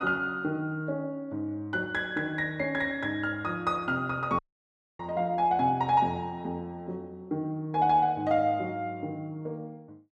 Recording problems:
dropout; at 4.5 s for 0.5 s

